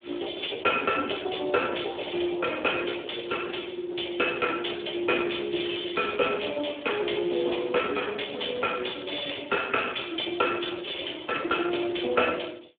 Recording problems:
phone line; 280 Hz to 3.6 kHz, Speex

